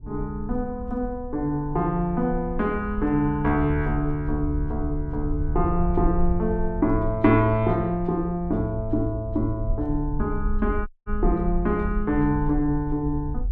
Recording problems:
low-frequency rumble; below 58 Hz, SNR 8 dB
audio cutting out; at 11 s

